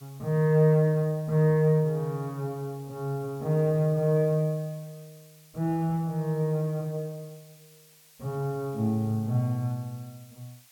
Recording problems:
background hiss; slope +3 dB per octave, SNR 27 dB

